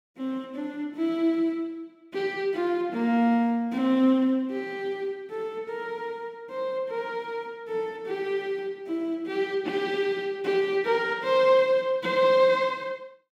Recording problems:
none

